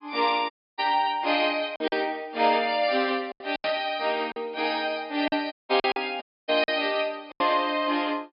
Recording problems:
treble missing; nothing above 5.5 kHz
lost packets; 7% of the sound replaced, filled with silence
audio cutting out; at 0.5 s, at 5.5 s and at 6 s
burst of static; at 3.5 s and at 6.5 s; peak -7 dB vs average level

